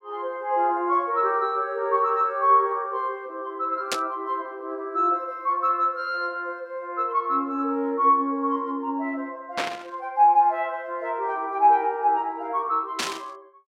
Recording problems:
static burst; at 4 s, at 9.5 s and at 13 s; peak +2 dB vs average level

